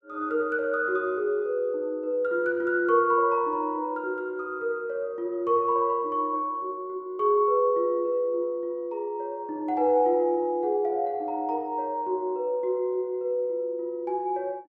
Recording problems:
none

